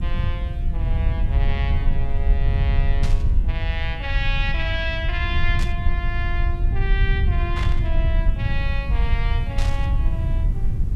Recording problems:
hiss; slope -6 dB per octave, SNR 23 dB
low-frequency rumble; below 76 Hz, SNR -7 dB
burst of static; 4 times, first at 3 s; peak 0 dB vs average level

